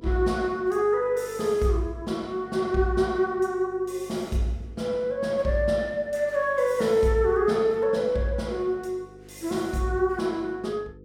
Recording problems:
hum; 50 Hz, harmonics up to 500 Hz, SNR 24 dB

